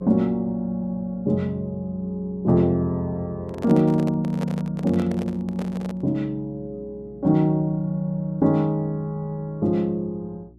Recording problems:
hum; 60 Hz, harmonics up to 360 Hz, SNR 25 dB
microphone handling noise; from 3.5 to 6 s; peak -6 dB vs average level

